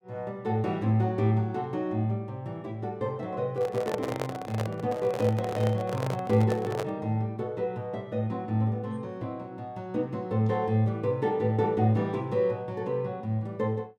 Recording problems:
microphone handling noise; from 3.5 to 7 s; peak 0 dB vs average level

